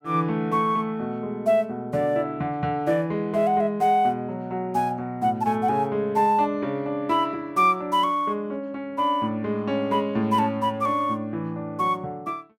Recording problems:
none

